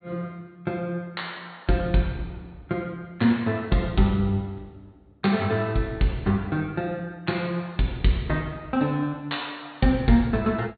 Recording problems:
treble cut off; nothing above 4.4 kHz

